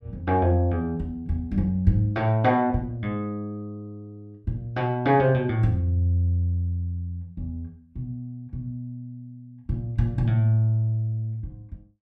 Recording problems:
none

